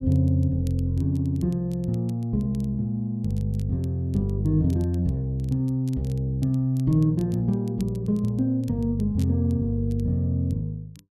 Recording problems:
crackle; vinyl, SNR 30 dB

